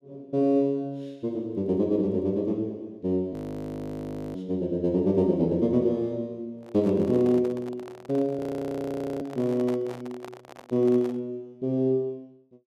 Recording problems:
audio freezing; at 3.5 s for 1 s and at 8.5 s for 1 s
microphone handling noise; from 6.5 to 11 s; peak -9 dB vs average level

